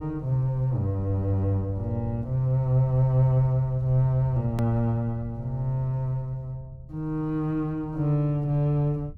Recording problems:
rumble; below 110 Hz, SNR 17 dB
click at an edit; at 4.5 s

